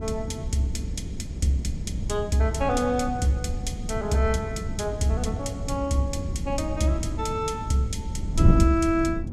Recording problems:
wind on the microphone; below 160 Hz, SNR 4 dB

